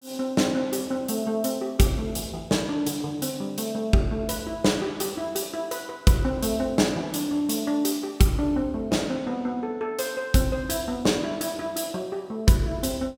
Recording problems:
none

